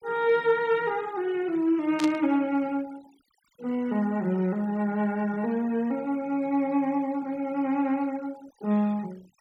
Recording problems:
noise reduction artefacts; signal-to-artefact ratio 25 dB
static burst; at 2 s; peak -4 dB vs average level

